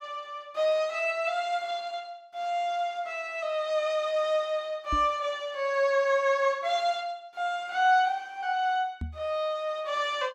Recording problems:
microphone bump; at 5 s and at 9 s; peak -2 dB vs average level

